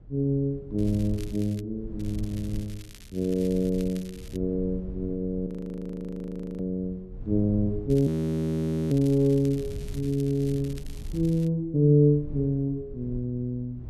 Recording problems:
rumble; below 100 Hz, SNR 15 dB
crackle; at 1 s, from 2 to 4.5 s and from 8 to 11 s; loose cable, SNR 23 dB
frozen audio; at 5.5 s for 1 s and at 8 s for 1 s

